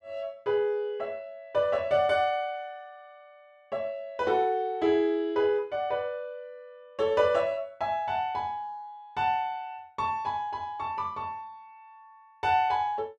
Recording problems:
none

